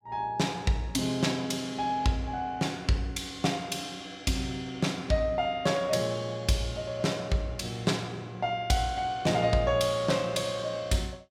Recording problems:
none

